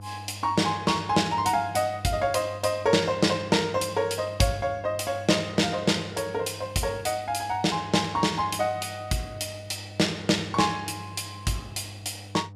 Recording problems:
hum; 50 Hz, harmonics up to 700 Hz, SNR 17 dB

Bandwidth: 15 kHz